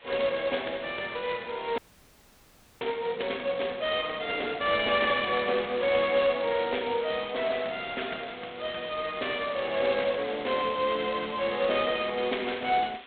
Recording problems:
phone line; 300 Hz to 4 kHz, G.726
background hiss; SNR 22 dB
audio freezing; at 2 s for 1 s

